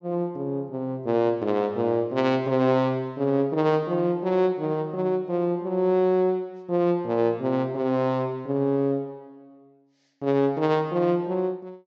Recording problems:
treble cut off; nothing above 8 kHz

